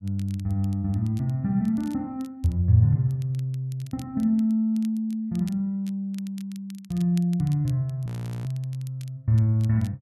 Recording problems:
crackle; vinyl, SNR 27 dB
frozen audio; at 8 s

